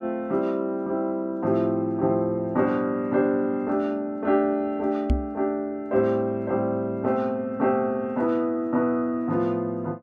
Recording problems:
microphone bump; at 5 s; peak +5 dB vs average level

